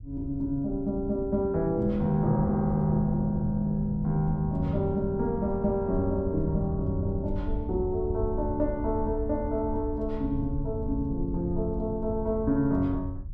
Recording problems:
low-frequency rumble; below 88 Hz, SNR 9 dB

